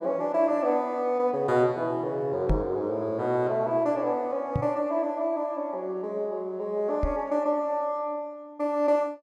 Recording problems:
microphone bump; at 2.5 s, at 4.5 s and at 7 s; peak +4 dB vs average level

